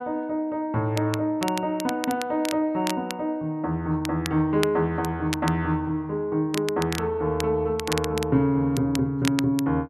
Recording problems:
crackle; vinyl, SNR 11 dB

